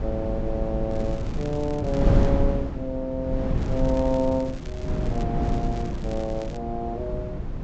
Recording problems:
treble cut off; nothing above 8 kHz
wind on the microphone; below 190 Hz, SNR -1 dB
crackling; from 1 to 2.5 s, from 3.5 to 5 s and from 5.5 to 6.5 s; loose cable, SNR 19 dB

